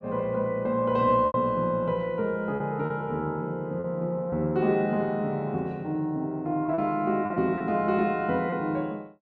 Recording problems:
lost packets; 4% of the sound replaced, filled with repeated pitch periods

